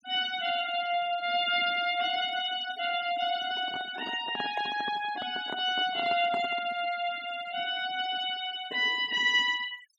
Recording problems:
noise reduction artefacts; signal-to-artefact ratio 17 dB
handling noise; from 3.5 to 7 s; peak -5 dB vs average level

